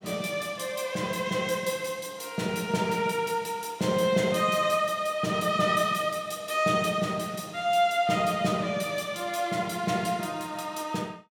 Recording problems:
none

